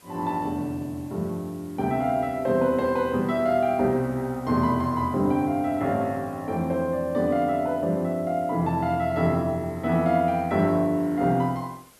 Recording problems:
hiss; slope -3 dB per octave, SNR 28 dB

